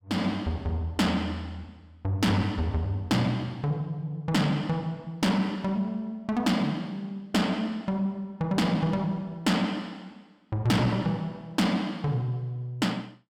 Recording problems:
distorted audio; soft clipping, signal-to-distortion ratio 11 dB

